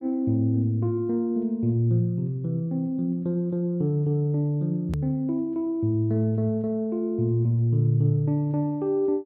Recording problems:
hard cut with a click; at 5 s

